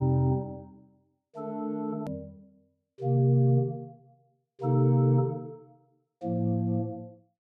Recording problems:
click at an edit; at 2 s

